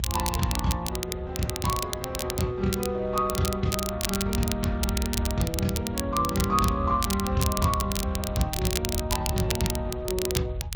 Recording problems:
lossy compression; G.722, then Speex, log-spectral distance 2 dB
rumble; below 96 Hz, SNR 6 dB
crackle; vinyl, SNR 4 dB

